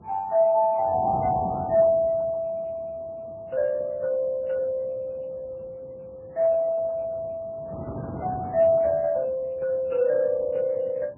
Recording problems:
lossy compression; Speex, then MP3, log-spectral distance 2 dB, nothing above 2.7 kHz
wind on the microphone; below 480 Hz, SNR 16 dB

